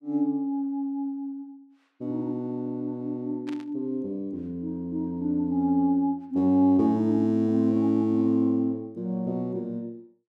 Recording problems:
burst of static; at 3.5 s; peak -14 dB vs average level

